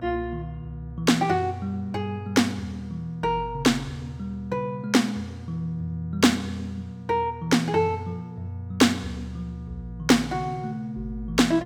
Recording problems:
hum; 60 Hz, harmonics up to 1.4 kHz, SNR 17 dB

